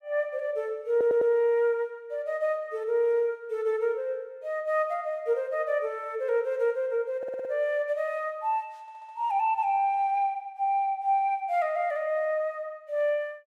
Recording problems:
audio stuttering; at 1 s, at 7 s and at 9 s

